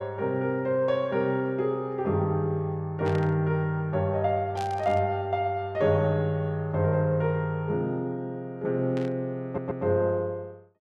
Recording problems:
static burst; at 3 s, at 4.5 s and at 9 s; peak -10 dB vs average level
stutter; at 9.5 s

